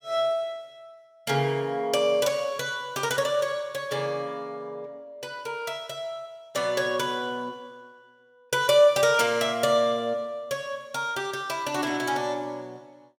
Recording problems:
none

